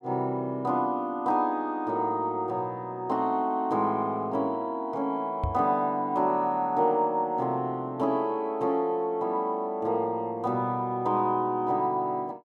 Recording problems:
microphone bump; at 5.5 s; peak +1 dB vs average level

